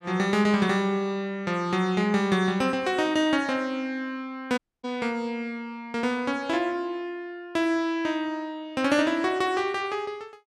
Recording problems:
dropout; at 4.5 s

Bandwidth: 13.5 kHz